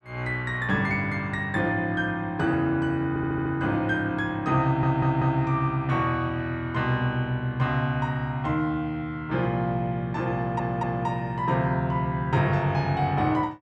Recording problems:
stutter; at 3 s, at 4.5 s and at 10 s

